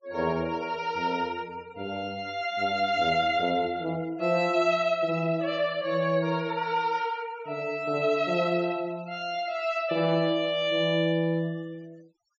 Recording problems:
treble cut off; nothing above 8 kHz
denoising artefacts; signal-to-artefact ratio 25 dB

